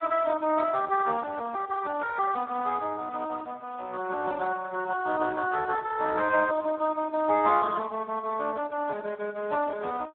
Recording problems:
phone line; 260 Hz to 2.6 kHz, Speex

